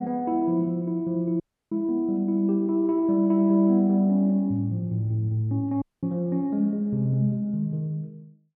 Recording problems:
audio cutting out; at 1.5 s and at 6 s

